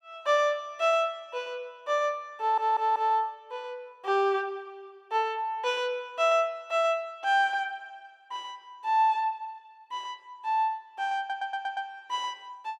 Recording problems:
stutter; at 2.5 s and at 11 s

